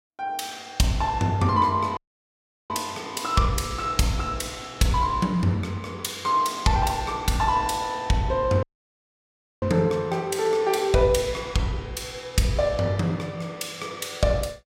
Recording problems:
audio cutting out; at 2 s for 0.5 s and at 8.5 s for 1 s

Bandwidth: 16 kHz